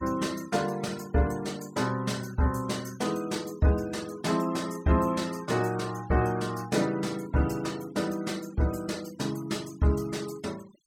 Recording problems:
noise reduction artefacts; signal-to-artefact ratio 20 dB

